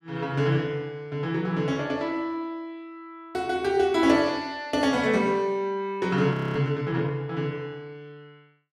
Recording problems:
frozen audio; at 6.5 s

